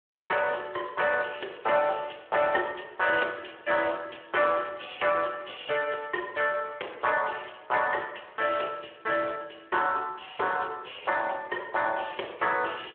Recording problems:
phone line; 340 Hz to 3.4 kHz, Speex

